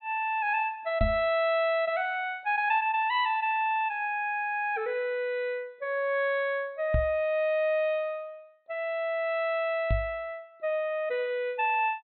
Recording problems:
treble missing; nothing above 4.2 kHz
microphone bump; at 1 s, at 7 s and at 10 s; peak +3 dB vs average level

